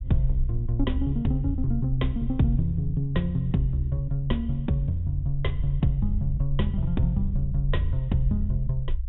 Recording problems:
treble missing; nothing above 3.7 kHz
rumble; below 52 Hz, SNR 6 dB

